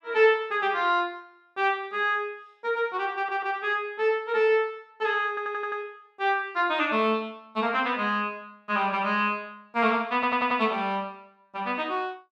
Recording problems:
audio stuttering; at 3 s, at 5.5 s and at 10 s

